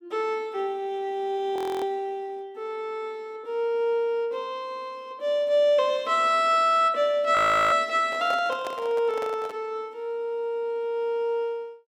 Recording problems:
audio freezing; at 1.5 s and at 7.5 s
handling noise; from 8 to 9.5 s; peak -6 dB vs average level

